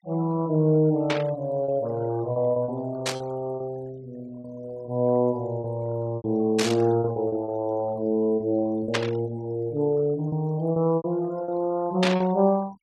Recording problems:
denoising artefacts; signal-to-artefact ratio 24 dB
lost packets; 7% of the sound replaced, filled with repeated pitch periods
burst of static; 5 times, first at 1 s; peak +4 dB vs average level

